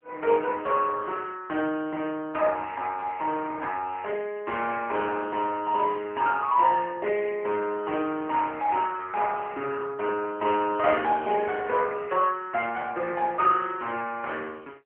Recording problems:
telephone audio; 260 Hz to 3 kHz, AMR-NB

